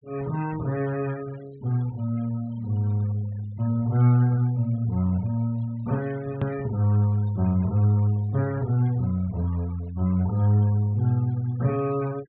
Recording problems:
treble cut off; nothing above 4 kHz
noise reduction artefacts; signal-to-artefact ratio 24 dB
hard cut with a click; at 6.5 s

